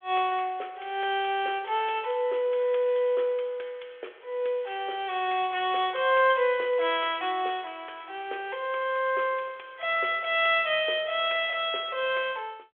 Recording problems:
telephone audio; 320 Hz to 3.5 kHz, G.726

